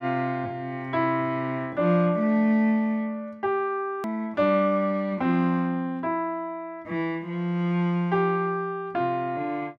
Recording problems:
edit click; at 4 s

